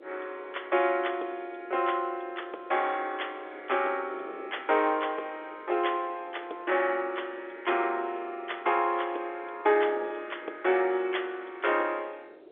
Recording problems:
telephone audio; 300 Hz to 3.6 kHz, G.711
wind noise; below 550 Hz, SNR 20 dB

